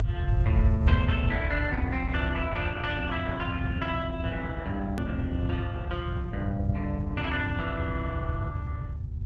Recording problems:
lossy compression; Opus, then G.722, log-spectral distance 2 dB, nothing above 13.1 kHz
hum; 60 Hz, harmonics up to 840 Hz, SNR 21 dB
rumble; below 110 Hz, SNR -2 dB
hard cut with a click; at 5 s

